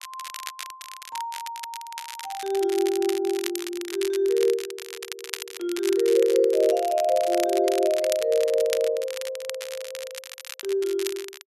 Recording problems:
crackle; vinyl, SNR 12 dB

